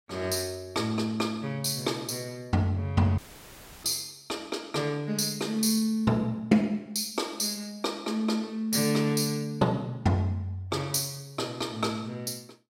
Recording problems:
dropout; at 3 s for 0.5 s; filled with static

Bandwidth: 16 kHz